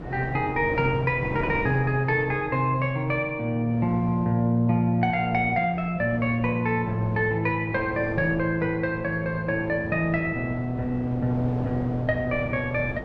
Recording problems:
wind on the microphone; below 530 Hz, SNR 12 dB

